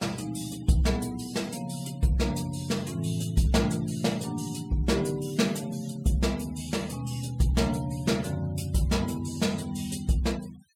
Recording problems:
denoising artefacts; signal-to-artefact ratio 21 dB

